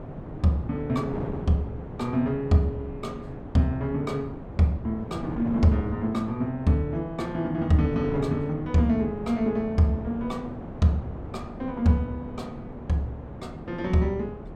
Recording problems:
wind on the microphone; below 450 Hz, SNR 11 dB

